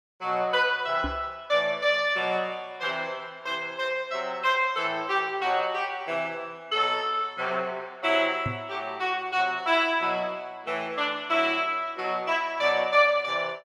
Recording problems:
microphone thump; at 1 s and at 8.5 s; peak -2 dB vs average level

